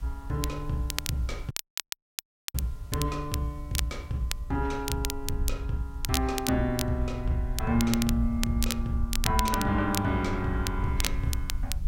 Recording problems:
hiss; SNR 29 dB
low-frequency rumble; below 68 Hz, SNR 7 dB
crackling; vinyl, SNR 6 dB
dropout; at 1.5 s for 1 s

